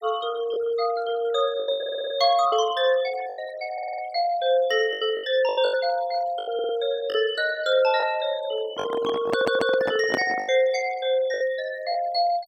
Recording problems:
noise reduction artefacts; signal-to-artefact ratio 18 dB
packet loss; 8% of the sound replaced, filled with the last packet
stutter; 4 times, first at 2 s
microphone handling noise; from 8.5 to 11 s; peak +2 dB vs average level

